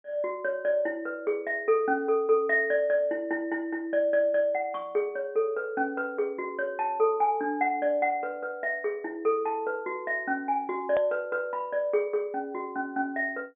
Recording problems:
low-pass filter; nothing above 3.6 kHz
click at an edit; at 11 s

